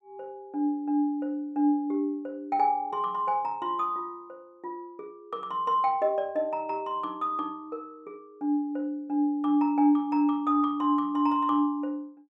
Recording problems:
none

